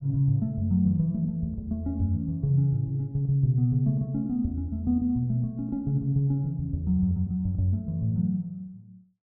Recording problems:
none

